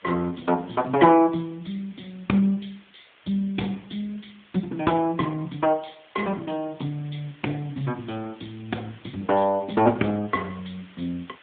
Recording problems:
telephone audio; 190 Hz to 3.6 kHz, AMR-NB
hiss; SNR 27 dB

